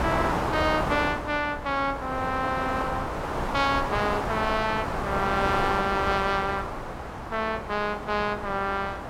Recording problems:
hum; 60 Hz, harmonics up to 600 Hz, SNR 19 dB
wind on the microphone; below 1.2 kHz, SNR 3 dB

